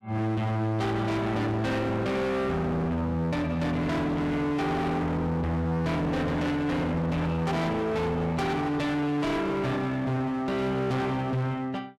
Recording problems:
distorted audio; hard clipping, uneven, signal-to-distortion ratio 6 dB

